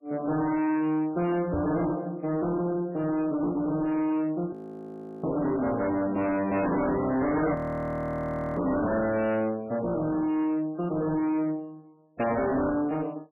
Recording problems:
lossy compression; MP3, log-spectral distance 3 dB, nothing above 14.1 kHz
distortion; hard clipping, signal-to-distortion ratio 6 dB
microphone bump; at 1.5 s; peak 0 dB vs average level
audio freezing; at 4.5 s for 0.5 s and at 7.5 s for 1 s

